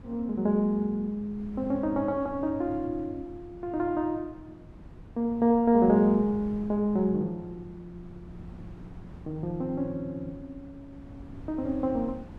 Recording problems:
wind noise; below 240 Hz, SNR 19 dB

